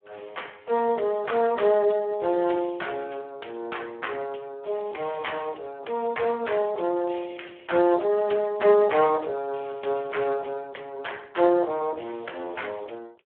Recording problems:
telephone audio; 300 Hz to 3.3 kHz, Speex

